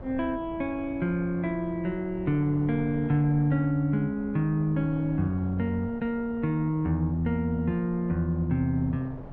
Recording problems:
wind on the microphone; below 410 Hz, SNR 16 dB

